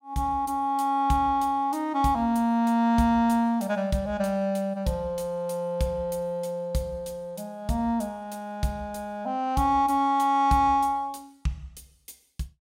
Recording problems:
none

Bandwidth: 16.5 kHz